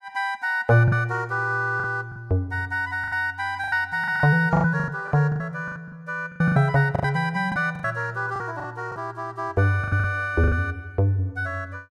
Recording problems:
packet loss; 12% of the sound replaced, filled with the last packet

